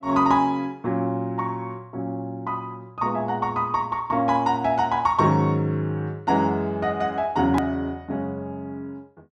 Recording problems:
click at an edit; at 7.5 s

